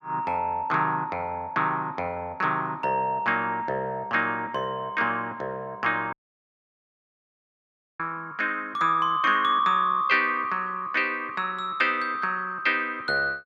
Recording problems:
audio cutting out; at 6 s for 2 s

